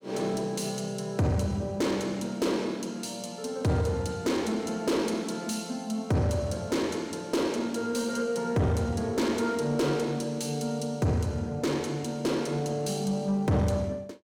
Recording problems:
distortion; soft clipping, signal-to-distortion ratio 11 dB

